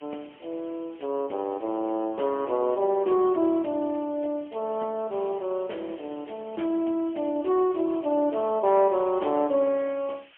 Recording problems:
telephone audio; 240 Hz to 3.3 kHz, AMR-NB, then MP3
hiss; SNR 27 dB

